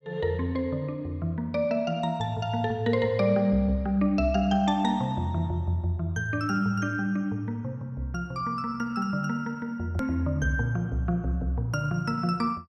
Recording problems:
hard cut with a click; at 10 s

